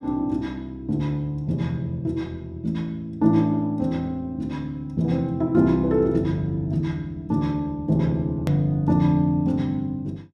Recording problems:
click at an edit; at 8.5 s

